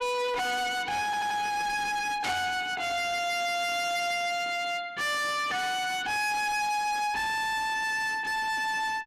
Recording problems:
distortion; hard clipping, signal-to-distortion ratio 6 dB
audio stuttering; at 1 s
static burst; at 2 s; peak -2 dB vs average level

